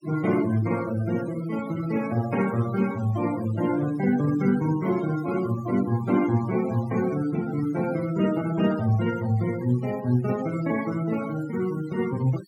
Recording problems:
denoising artefacts; signal-to-artefact ratio 16 dB

